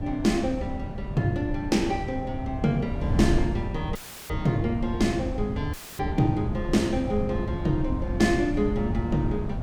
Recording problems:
wind noise; below 160 Hz, SNR 5 dB
dropout; at 4 s and at 5.5 s; filled with static

